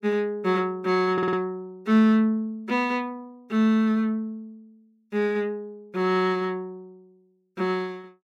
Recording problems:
audio stuttering; at 1 s

